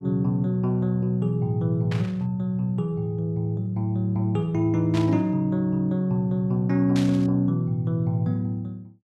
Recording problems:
burst of static; at 2 s, at 5 s and at 7 s; peak -6 dB vs average level

